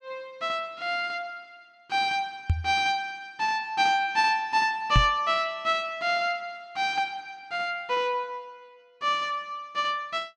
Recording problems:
microphone thump; at 2.5 s and at 5 s; peak +8 dB vs average level

